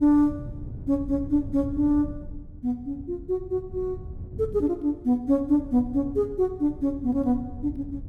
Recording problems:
wind on the microphone; below 130 Hz, SNR 14 dB

